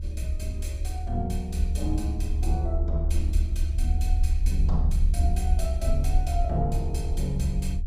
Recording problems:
rumble; below 72 Hz, strongest tone 32 Hz, SNR -5 dB

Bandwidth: 15.5 kHz